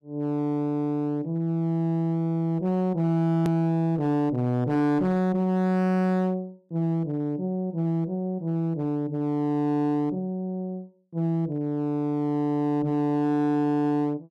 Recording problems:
distortion; hard clipping, uneven, signal-to-distortion ratio 10 dB
hard cut with a click; at 3.5 s

